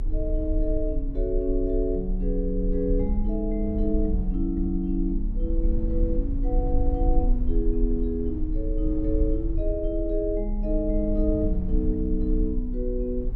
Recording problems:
low-frequency rumble; below 46 Hz, strongest tone 32 Hz, SNR 1 dB

